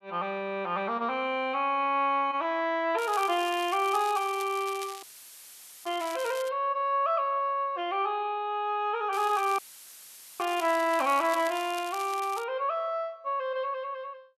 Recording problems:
crackling; from 3 to 6.5 s and from 9 to 12 s; loose cable, SNR 15 dB
audio cutting out; at 5 s for 1 s and at 9.5 s for 1 s; filled with static

